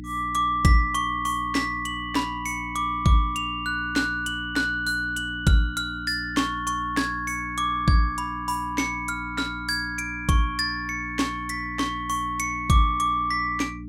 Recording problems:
electrical hum; 60 Hz, harmonics up to 300 Hz, SNR 12 dB

